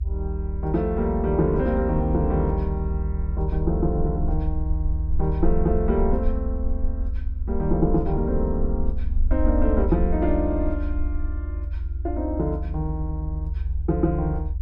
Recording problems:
rumble; below 74 Hz, SNR 1 dB

